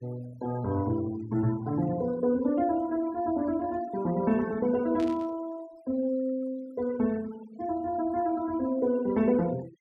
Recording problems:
denoising artefacts; signal-to-artefact ratio 20 dB
burst of static; at 5 s; peak -13 dB vs average level

